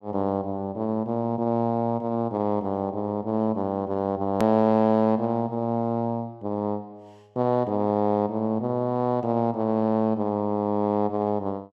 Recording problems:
hard cut with a click; at 4.5 s

